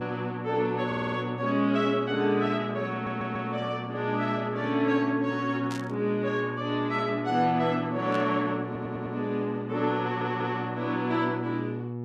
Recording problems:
electrical hum; 60 Hz, harmonics up to 960 Hz, SNR 9 dB
stutter; 4 times, first at 1 s
burst of static; at 5.5 s and at 8 s; peak -8 dB vs average level

